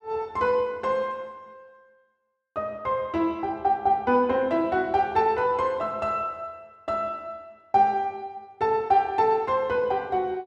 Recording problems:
none

